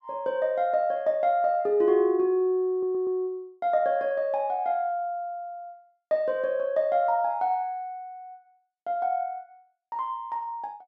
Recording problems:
audio stuttering; at 2.5 s

